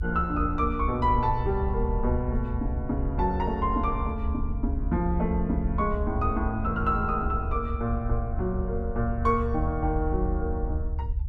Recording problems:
low-frequency rumble; below 72 Hz, SNR 3 dB

